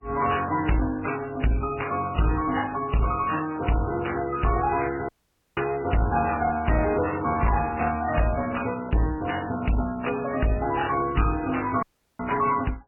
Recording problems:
lossy compression; MP3, then AAC, log-spectral distance 5 dB, nothing above 2.9 kHz
distorted audio; hard clipping, uneven, signal-to-distortion ratio 9 dB
dropout; at 5 s and at 12 s

